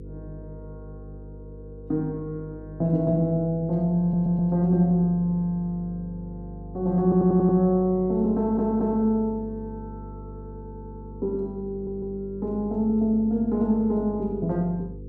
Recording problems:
hum; 50 Hz, harmonics up to 500 Hz, SNR 16 dB
stutter; 4 times, first at 4 s

